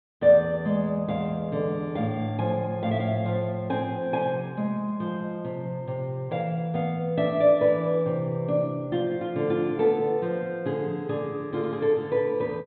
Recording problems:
treble missing; nothing above 4 kHz

